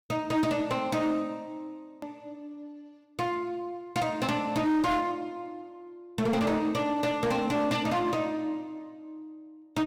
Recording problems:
distorted audio; hard clipping, signal-to-distortion ratio 11 dB
hard cut with a click; at 2 s

